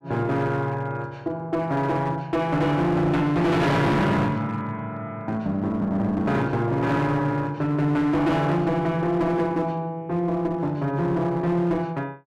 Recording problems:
distorted audio; hard clipping, uneven, signal-to-distortion ratio 7 dB

